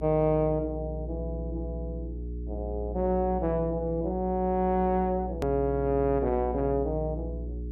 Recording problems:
hum; 60 Hz, harmonics up to 420 Hz, SNR 8 dB
edit click; at 5.5 s

